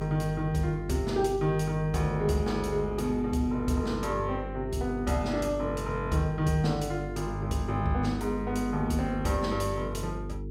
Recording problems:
hum; 50 Hz, harmonics up to 450 Hz, SNR 8 dB

